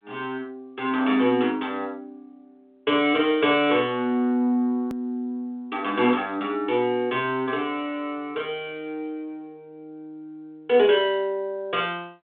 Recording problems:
telephone audio; 190 Hz to 3.6 kHz, G.726
click at an edit; at 5 s

